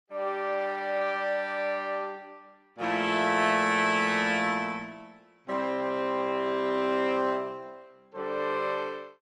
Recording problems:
codec artefacts; Opus, log-spectral distance 3 dB

